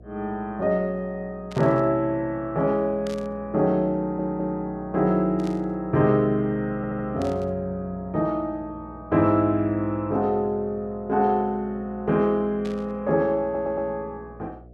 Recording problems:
hum; 60 Hz, harmonics up to 720 Hz, SNR 22 dB
burst of static; 5 times, first at 1.5 s; peak -12 dB vs average level
stutter; at 4 s, at 7 s and at 13 s

